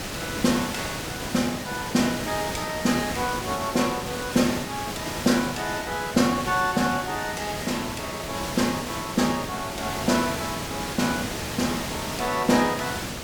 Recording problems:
background hiss; slope -3 dB per octave, SNR 5 dB

